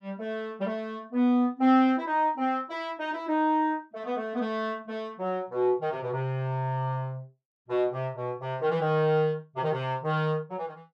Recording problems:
none

